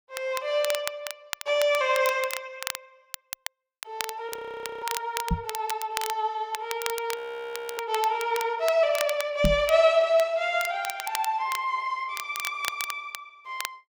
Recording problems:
crackling; vinyl, SNR 10 dB
audio freezing; at 4.5 s for 0.5 s and at 7 s for 0.5 s
microphone thump; at 5.5 s and at 9.5 s; peak +5 dB vs average level

